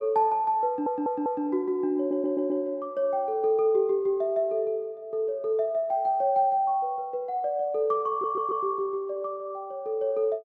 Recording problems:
stutter; at 0.5 s, at 2 s and at 8 s

